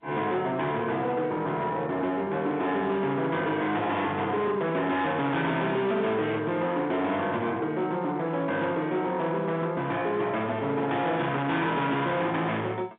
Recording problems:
telephone audio; 150 Hz to 3.9 kHz, G.711
distortion; hard clipping, signal-to-distortion ratio 8 dB

